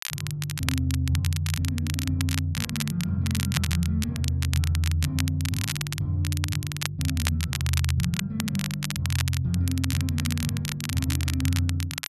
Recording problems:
crackling; vinyl, SNR 6 dB

